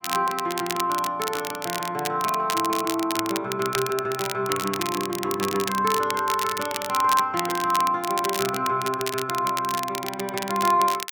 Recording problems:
crackling; vinyl, SNR 7 dB

